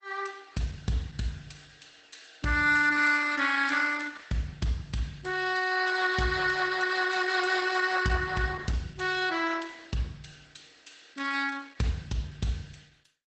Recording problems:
lossy codec; Opus, log-spectral distance 5 dB, nothing above 8.2 kHz

